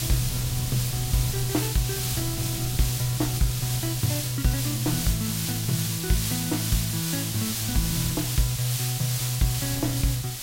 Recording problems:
hiss; slope +2 dB per octave, SNR 2 dB
wind noise; below 160 Hz, SNR 12 dB

